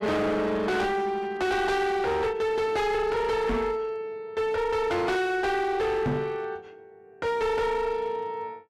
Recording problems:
distortion; hard clipping, uneven, signal-to-distortion ratio 7 dB
microphone bump; at 3.5 s and at 6 s; peak +3 dB vs average level

